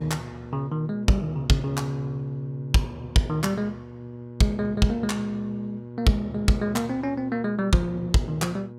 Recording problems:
hum; 60 Hz, harmonics up to 960 Hz, SNR 13 dB

